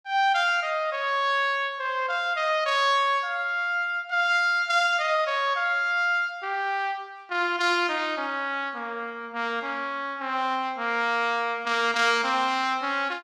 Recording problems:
none

